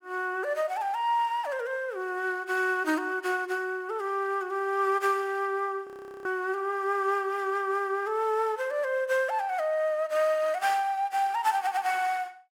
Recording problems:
audio freezing; at 6 s
stutter; at 12 s

